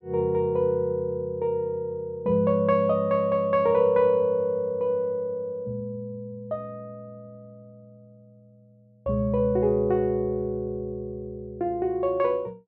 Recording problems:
none

